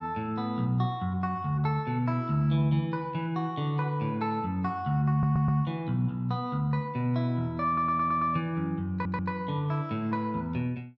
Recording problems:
audio stuttering; at 5 s, at 7.5 s and at 9 s

